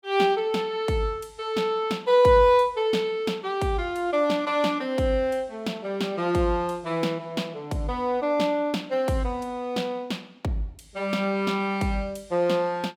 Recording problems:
none

